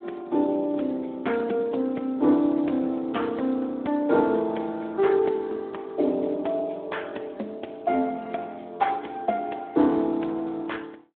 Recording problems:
telephone audio; 220 Hz to 3.6 kHz, Speex

